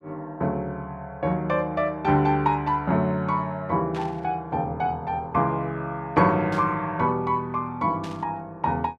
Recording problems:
static burst; at 4 s, at 6.5 s and at 8 s; peak -11 dB vs average level

